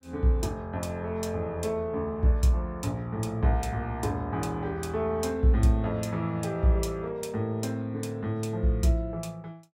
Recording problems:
none

